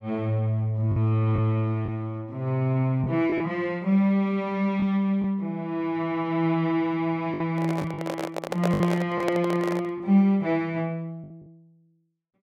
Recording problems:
lost packets; 4% of the sound replaced, filled with the last packet
microphone handling noise; from 7.5 to 10 s; peak +2 dB vs average level

